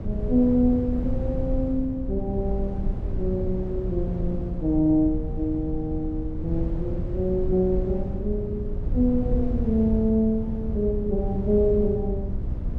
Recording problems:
hum; 60 Hz, harmonics up to 600 Hz, SNR 14 dB
rumble; below 120 Hz, SNR 8 dB
wind on the microphone; below 76 Hz, SNR 9 dB

